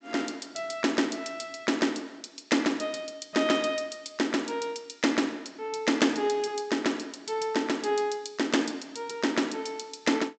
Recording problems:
low-pass filter; nothing above 8 kHz

